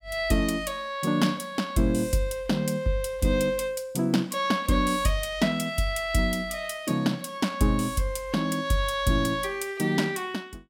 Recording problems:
none

